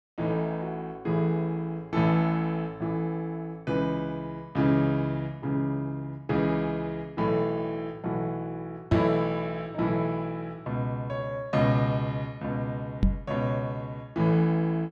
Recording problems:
microphone bump; at 9 s and at 13 s; peak +8 dB vs average level

